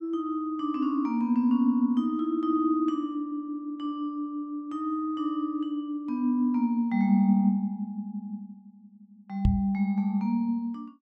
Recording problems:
knock on the microphone; at 9.5 s; peak +6 dB vs average level

